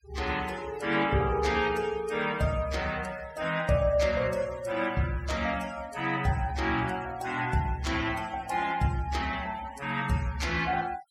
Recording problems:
denoising artefacts; signal-to-artefact ratio 18 dB

